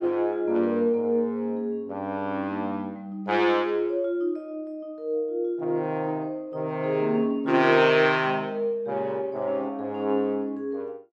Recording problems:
none

